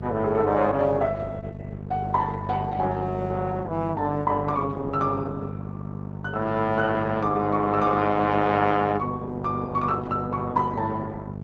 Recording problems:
lossy compression; Opus, log-spectral distance 2 dB
electrical hum; 50 Hz, harmonics up to 700 Hz, SNR 8 dB

